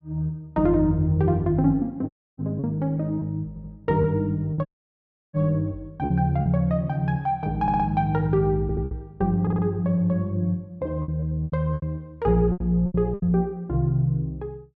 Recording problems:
packet loss; 6% of the sound replaced, filled with repeated pitch periods
audio cutting out; at 2 s and at 4.5 s for 0.5 s
audio stuttering; 4 times, first at 3.5 s

